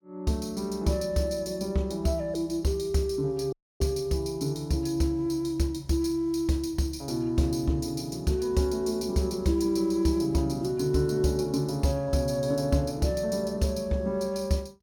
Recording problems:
dropout; at 3.5 s

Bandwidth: 17 kHz